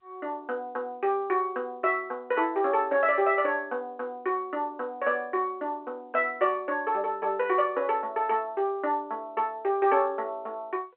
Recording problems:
phone line; 300 Hz to 3.3 kHz, G.711

